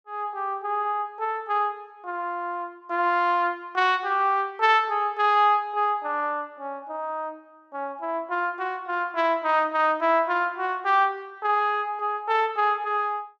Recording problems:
none

